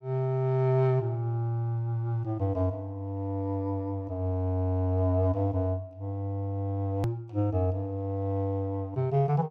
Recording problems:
click at an edit; at 7 s

